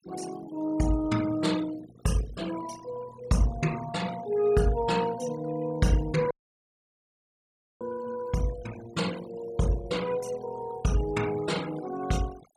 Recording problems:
denoising artefacts; signal-to-artefact ratio 16 dB
audio cutting out; at 6.5 s for 1.5 s

